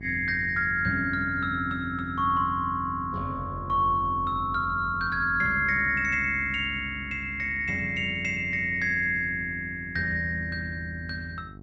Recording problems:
hum; 50 Hz, harmonics up to 800 Hz, SNR 19 dB

